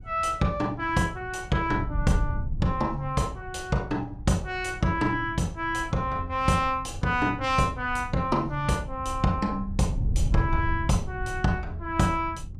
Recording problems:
wind noise; below 100 Hz, SNR 8 dB

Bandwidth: 14.5 kHz